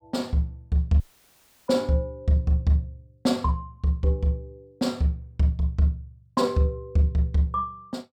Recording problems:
audio cutting out; at 1 s for 0.5 s

